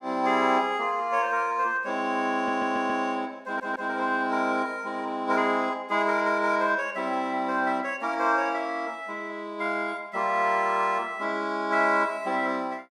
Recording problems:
stutter; at 2.5 s and at 3.5 s

